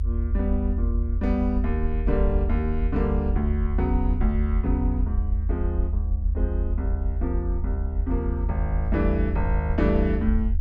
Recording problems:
rumble; below 76 Hz, SNR -2 dB

